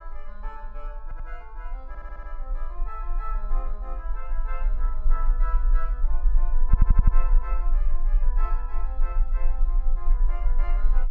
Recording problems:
low-frequency rumble; below 36 Hz, strongest tone 20 Hz, SNR -14 dB
audio stuttering; at 1 s, at 2 s and at 6.5 s

